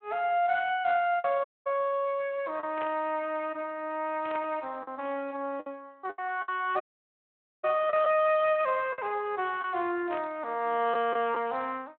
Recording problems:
telephone audio; 280 Hz to 3.3 kHz, Speex
lost packets; 4% of the sound replaced, filled with the last packet
dropout; at 1.5 s and at 7 s for 1 s
burst of static; 4 times, first at 3 s; peak -8 dB vs average level

